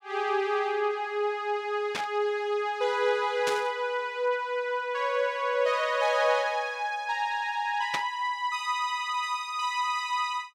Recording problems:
burst of static; at 2 s, at 3.5 s and at 8 s; peak +1 dB vs average level

